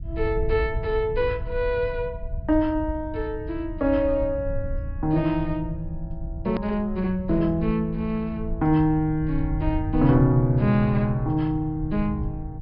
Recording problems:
treble missing; nothing above 5.5 kHz
rumble; below 88 Hz, SNR 9 dB
click at an edit; at 6.5 s

